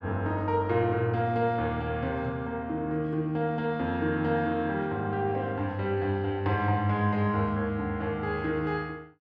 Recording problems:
none

